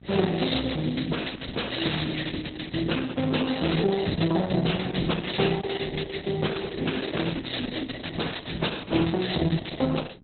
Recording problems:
codec artefacts; Opus, log-spectral distance 9 dB, nothing above 4.1 kHz
hum; 60 Hz, harmonics up to 840 Hz, SNR 23 dB

